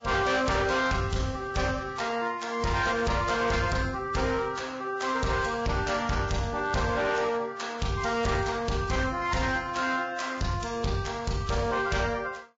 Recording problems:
codec artefacts; Vorbis, log-spectral distance 4 dB, nothing above 7.3 kHz
distortion; hard clipping, signal-to-distortion ratio 10 dB

